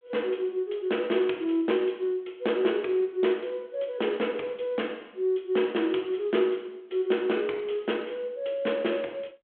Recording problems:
phone line; 260 Hz to 3.4 kHz, G.726

